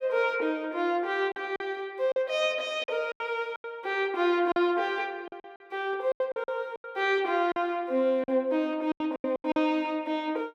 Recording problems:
lost packets; 10% of the sound replaced, filled with silence

